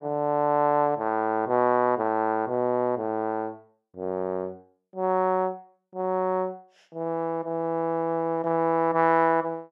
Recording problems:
none

